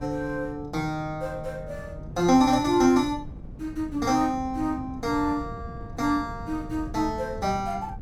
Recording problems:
wind noise; below 180 Hz, SNR 15 dB

